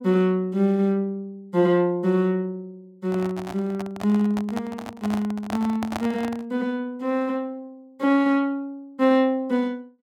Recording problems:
microphone handling noise; from 3 to 6.5 s; peak -2 dB vs average level

